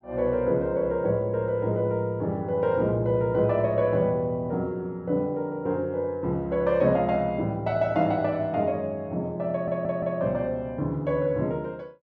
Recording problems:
audio stuttering; at 9.5 s

